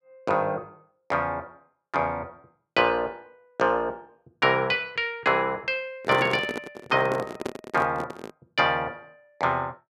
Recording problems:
handling noise; from 6 to 8.5 s; peak -1 dB vs average level

